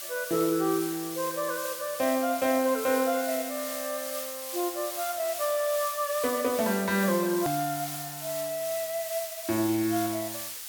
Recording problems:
hiss; slope +4 dB per octave, SNR 6 dB
hard cut with a click; at 7.5 s

